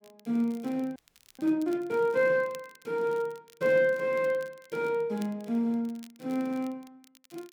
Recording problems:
crackling; vinyl, SNR 27 dB
audio freezing; at 1 s

